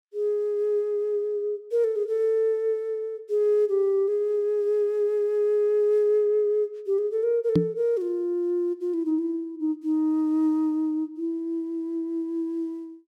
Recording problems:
microphone thump; at 7.5 s; peak +7 dB vs average level

